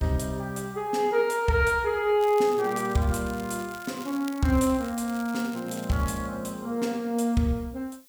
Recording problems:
background hiss; slope +2 dB per octave, SNR 27 dB
crackling; from 2 to 6.5 s; loose cable, SNR 19 dB

